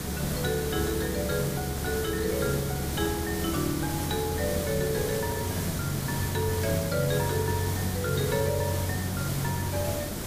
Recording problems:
background hiss; SNR 3 dB

